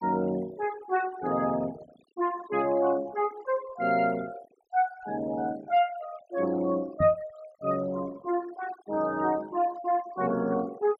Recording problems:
denoising artefacts; signal-to-artefact ratio 19 dB
microphone bump; at 7 s; peak +2 dB vs average level

